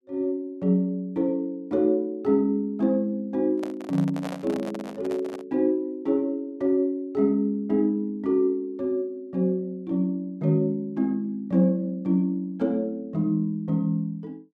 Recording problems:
handling noise; from 3.5 to 5.5 s; peak -6 dB vs average level

